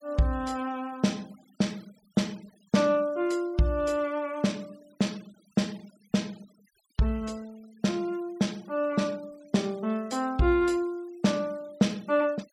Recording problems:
denoising artefacts; signal-to-artefact ratio 26 dB

